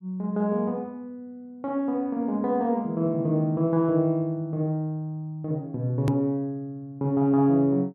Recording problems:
click at an edit; at 6 s

